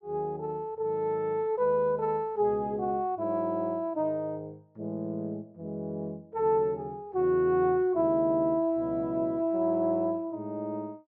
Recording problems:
none

